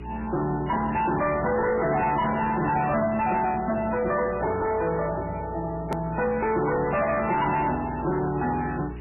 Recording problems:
lossy compression; MP3, log-spectral distance 6 dB, nothing above 2.7 kHz
distortion; soft clipping, signal-to-distortion ratio 7 dB
mains hum; 60 Hz, harmonics up to 420 Hz, SNR 15 dB
hiss; SNR 26 dB
edit click; at 6 s

